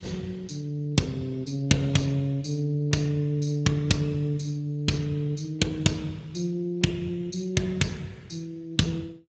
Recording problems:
codec artefacts; Speex, log-spectral distance 3 dB, nothing above 7.6 kHz

